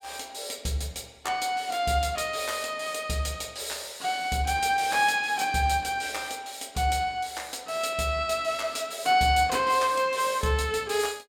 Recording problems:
none

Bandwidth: 17.5 kHz